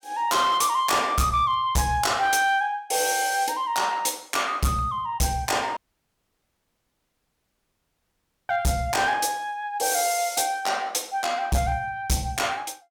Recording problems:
distortion; hard clipping, signal-to-distortion ratio 10 dB
audio cutting out; at 6 s for 2.5 s

